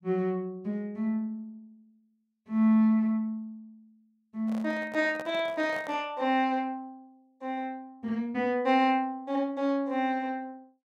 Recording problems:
microphone handling noise; from 4.5 to 6 s; peak -8 dB vs average level

